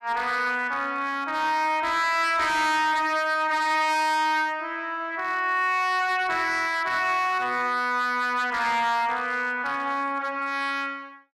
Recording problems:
distortion; hard clipping, signal-to-distortion ratio 11 dB

